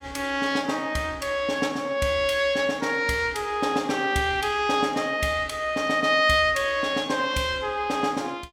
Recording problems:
none

